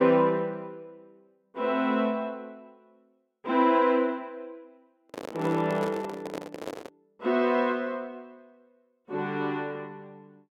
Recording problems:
handling noise; from 5 to 7 s; peak -4 dB vs average level

